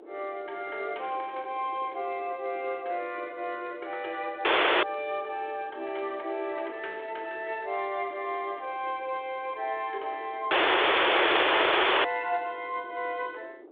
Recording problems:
phone line; 300 Hz to 3.9 kHz, G.726
wind on the microphone; below 530 Hz, SNR 18 dB
audio cutting out; at 4.5 s and at 11 s for 1.5 s

